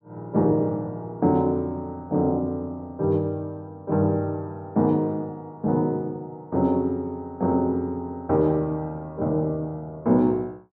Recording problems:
none

